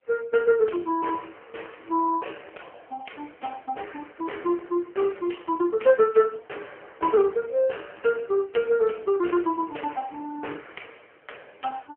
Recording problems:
telephone audio; 320 Hz to 3.1 kHz, AMR-NB

